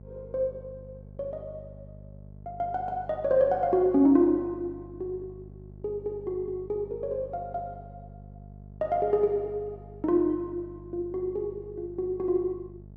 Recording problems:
mains hum; 50 Hz, harmonics up to 650 Hz, SNR 19 dB

